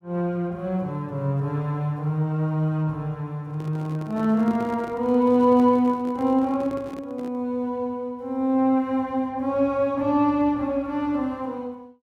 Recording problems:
handling noise; from 3.5 to 7.5 s; peak -10 dB vs average level

